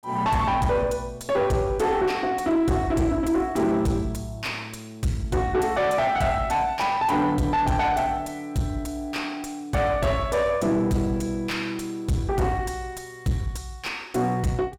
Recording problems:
distortion; soft clipping, signal-to-distortion ratio 7 dB

